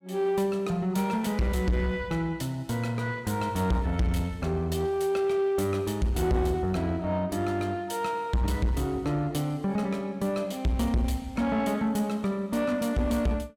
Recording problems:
distortion; soft clipping, signal-to-distortion ratio 8 dB

